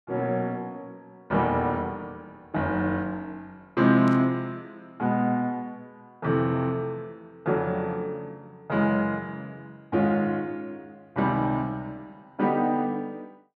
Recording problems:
static burst; at 4 s; peak -14 dB vs average level

